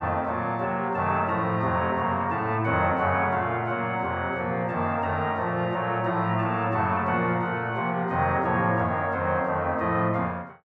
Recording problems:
none

